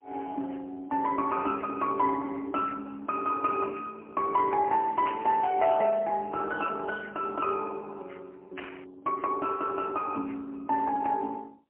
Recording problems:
phone line; 280 Hz to 3.4 kHz, AMR-NB, then MP3
burst of static; at 5 s and at 8.5 s; peak -6 dB vs average level

